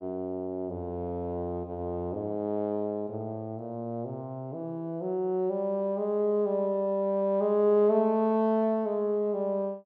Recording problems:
none

